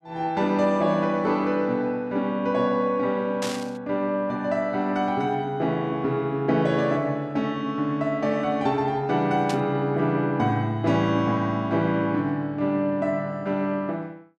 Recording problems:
burst of static; at 3.5 s and at 9.5 s; peak -4 dB vs average level

